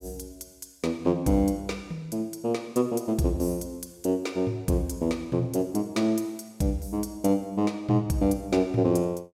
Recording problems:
none

